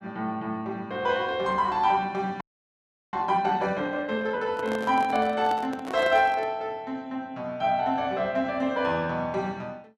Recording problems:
audio freezing; at 2.5 s for 0.5 s
handling noise; from 4.5 to 6.5 s; peak -5 dB vs average level

